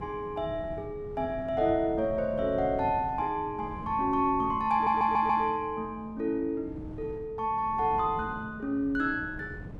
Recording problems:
wind on the microphone; below 240 Hz, SNR 15 dB
stutter; at 4.5 s

